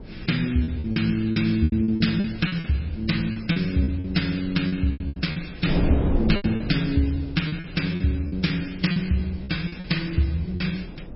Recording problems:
lossy codec; MP3, log-spectral distance 4 dB, nothing above 5.3 kHz
hum; 60 Hz, harmonics up to 360 Hz, SNR 25 dB
wind on the microphone; below 330 Hz, SNR 10 dB
lost packets; 12% of the sound replaced, filled with repeated pitch periods

